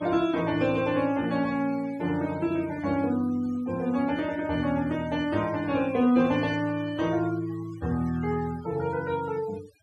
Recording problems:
denoising artefacts; signal-to-artefact ratio 19 dB

